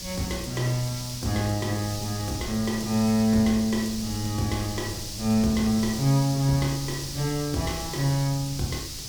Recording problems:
hiss; SNR 9 dB
rumble; below 130 Hz, SNR 17 dB

